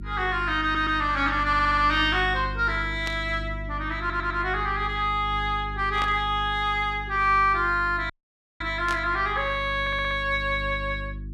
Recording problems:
hum; 50 Hz, harmonics up to 350 Hz, SNR 12 dB
audio stuttering; 4 times, first at 0.5 s
static burst; at 3 s, at 6 s and at 9 s; peak -6 dB vs average level
audio cutting out; at 8 s for 0.5 s

